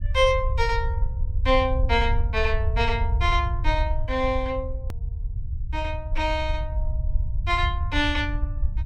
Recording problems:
low-frequency rumble; below 76 Hz, SNR 2 dB
edit click; at 5 s

